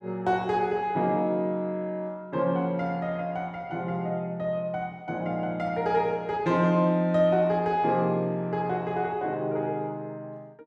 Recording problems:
none

